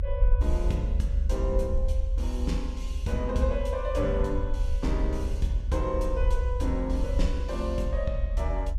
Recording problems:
low-frequency rumble; below 66 Hz, strongest tone 42 Hz, SNR -2 dB

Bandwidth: 14.5 kHz